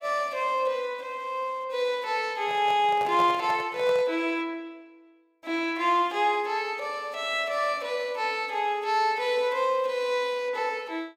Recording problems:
handling noise; from 2.5 to 4 s; peak -5 dB vs average level

